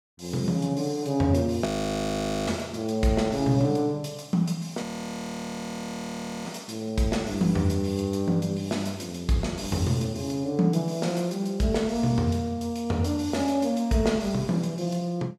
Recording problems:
frozen audio; at 1.5 s for 1 s and at 5 s for 1.5 s

